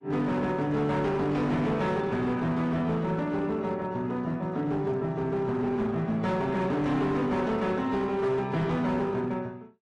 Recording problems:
lossy compression; AAC, log-spectral distance 2 dB, nothing above 10.7 kHz
distortion; hard clipping, signal-to-distortion ratio 11 dB

